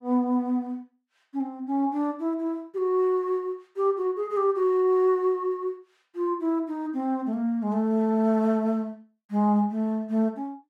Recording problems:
none

